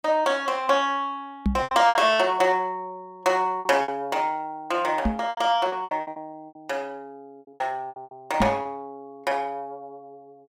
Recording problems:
packet loss; 10% of the sound replaced, filled with repeated pitch periods
microphone bump; at 1.5 s, at 5 s and at 8.5 s; peak +4 dB vs average level

